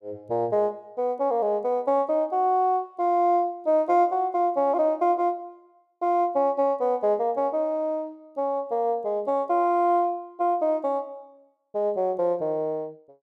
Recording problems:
none

